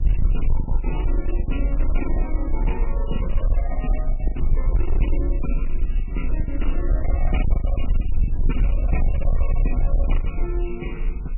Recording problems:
codec artefacts; MP3, log-spectral distance 2 dB, nothing above 2.9 kHz
distortion; hard clipping, signal-to-distortion ratio 8 dB
low-frequency rumble; below 50 Hz, strongest tone 22 Hz, SNR -7 dB
packet loss; 8% of the sound replaced, filled with the last packet

